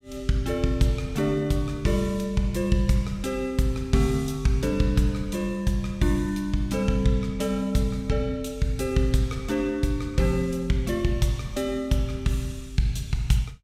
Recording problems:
none

